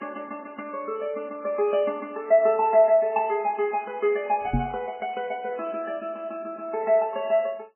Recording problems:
lossy codec; MP3, log-spectral distance 2 dB, nothing above 2.5 kHz
knock on the microphone; at 4.5 s; peak +4 dB vs average level

